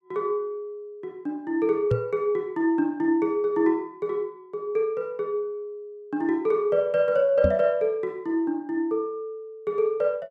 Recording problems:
microphone bump; at 2 s and at 7.5 s; peak +3 dB vs average level

